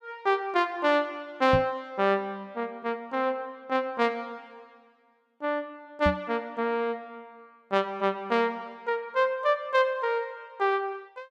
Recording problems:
microphone bump; at 1.5 s and at 6 s; peak +3 dB vs average level

